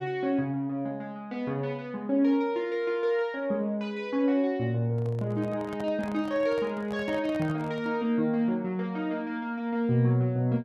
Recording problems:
microphone handling noise; from 5 to 8 s; peak -9 dB vs average level

